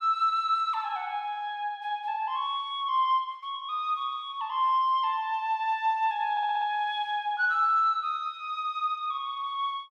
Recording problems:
audio stuttering; at 6.5 s

